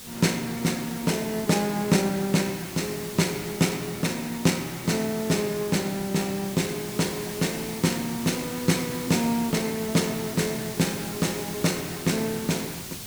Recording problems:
hiss; SNR 10 dB

